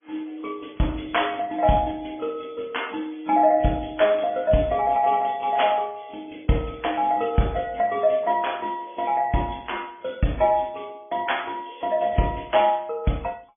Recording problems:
treble missing; nothing above 3.4 kHz
lossy compression; AAC, then MP3, log-spectral distance 5 dB

